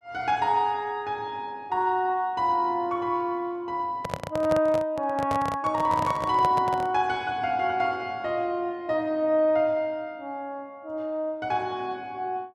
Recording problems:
handling noise; from 4 to 7 s; peak 0 dB vs average level

